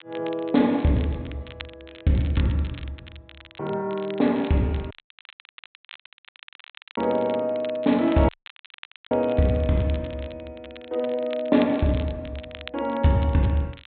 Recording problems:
treble cut off; nothing above 4 kHz
crackle; vinyl, SNR 21 dB
dropout; at 5 s for 2 s and at 8.5 s for 1 s

